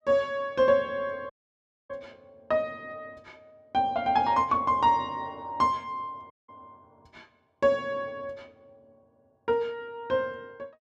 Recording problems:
dropout; at 1.5 s for 0.5 s and at 6.5 s

